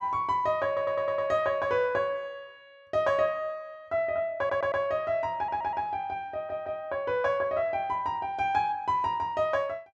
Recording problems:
audio stuttering; 4 times, first at 0.5 s

